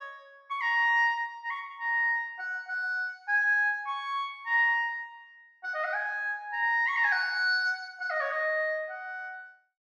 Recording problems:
none

